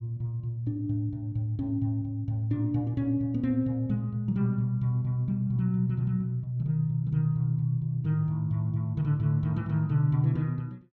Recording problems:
none

